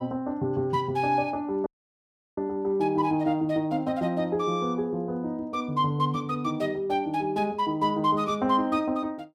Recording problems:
dropout; at 1.5 s for 0.5 s

